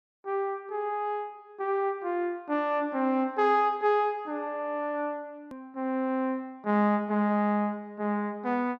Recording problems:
hard cut with a click; at 5.5 s

